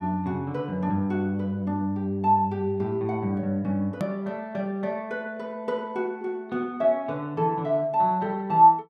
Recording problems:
edit click; at 4 s

